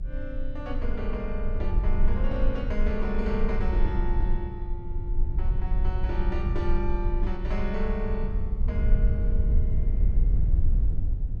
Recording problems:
rumble; below 54 Hz, strongest tone 20 Hz, SNR -6 dB

